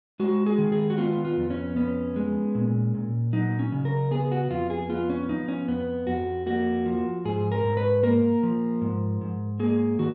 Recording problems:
none

